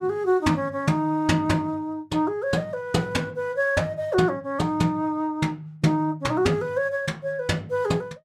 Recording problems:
none

